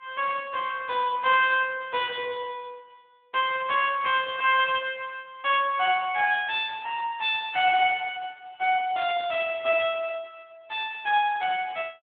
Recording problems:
phone line; 300 Hz to 3.6 kHz, Speex

